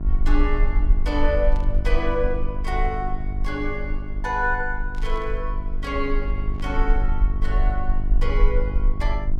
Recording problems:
hum; 50 Hz, harmonics up to 1.1 kHz, SNR 7 dB
low-frequency rumble; below 42 Hz, strongest tone 22 Hz, SNR -2 dB
static burst; at 1.5 s, at 5 s and at 6.5 s; peak -14 dB vs average level

